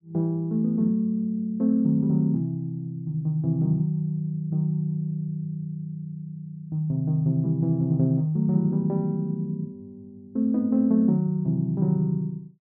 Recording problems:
none

